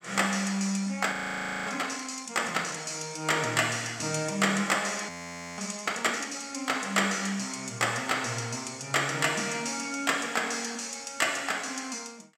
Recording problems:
audio freezing; at 1 s for 0.5 s and at 5 s

